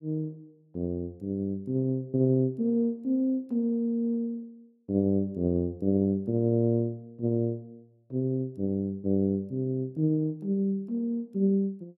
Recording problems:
none

